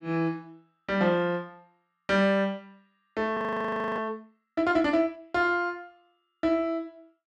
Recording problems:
frozen audio; at 3.5 s for 0.5 s

